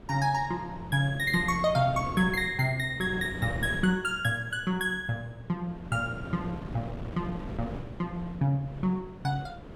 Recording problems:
wind on the microphone; below 380 Hz, SNR 12 dB

